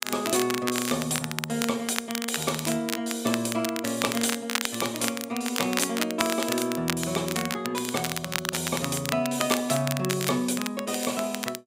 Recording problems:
crackle; vinyl, SNR 4 dB

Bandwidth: 15.5 kHz